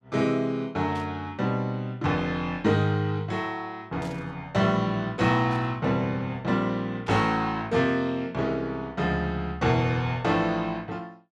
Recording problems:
burst of static; 4 times, first at 1 s; peak -13 dB vs average level

